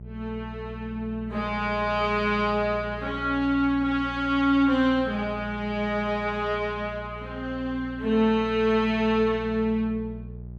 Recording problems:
hum; 60 Hz, harmonics up to 420 Hz, SNR 15 dB

